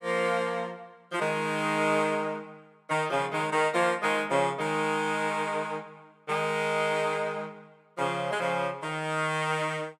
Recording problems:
none

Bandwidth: 17.5 kHz